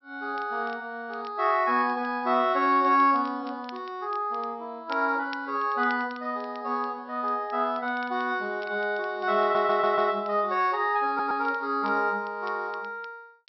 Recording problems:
treble missing; nothing above 5.6 kHz
crackling; vinyl, SNR 27 dB
stutter; at 9.5 s and at 11 s

